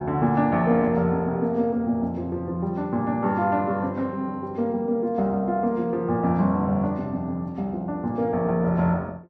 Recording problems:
none

